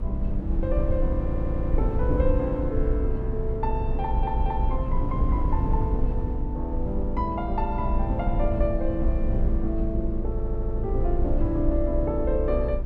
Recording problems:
low-frequency rumble; below 66 Hz, strongest tone 26 Hz, SNR -2 dB
audio stuttering; at 1 s, at 4 s and at 10 s

